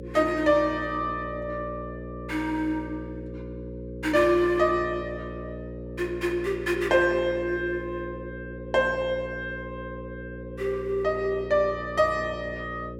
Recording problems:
electrical hum; 60 Hz, harmonics up to 540 Hz, SNR 12 dB

